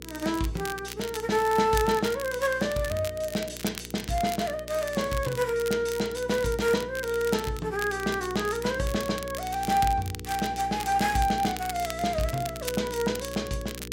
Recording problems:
hum; 60 Hz, harmonics up to 480 Hz, SNR 15 dB
crackle; vinyl, SNR 13 dB

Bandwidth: 16 kHz